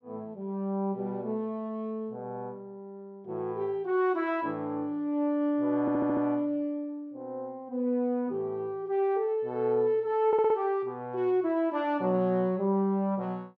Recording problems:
stutter; at 6 s and at 10 s

